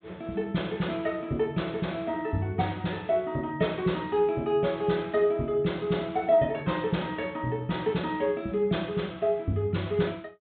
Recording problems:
low-pass filter; nothing above 4 kHz

